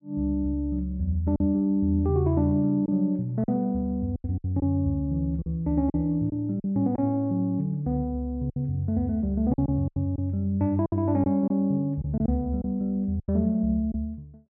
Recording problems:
packet loss; 6% of the sound replaced, filled with silence

